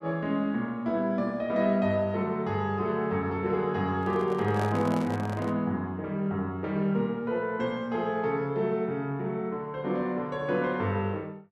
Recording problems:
handling noise; from 4 to 5.5 s; peak -3 dB vs average level

